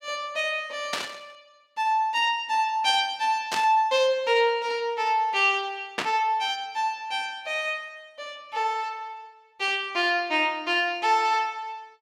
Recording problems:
static burst; at 1 s, at 3.5 s and at 6 s; peak +2 dB vs average level

